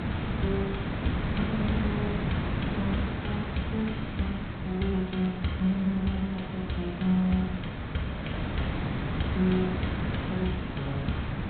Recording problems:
low-pass filter; nothing above 4 kHz
hiss; SNR 1 dB
crackle; from 3.5 to 7.5 s; loose cable, SNR 27 dB

